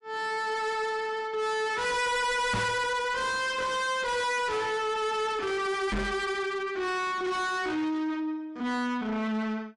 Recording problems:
lossy codec; MP3, log-spectral distance 2 dB, nothing above 11 kHz
distortion; soft clipping, signal-to-distortion ratio 5 dB
microphone bump; at 2.5 s and at 6 s; peak +4 dB vs average level

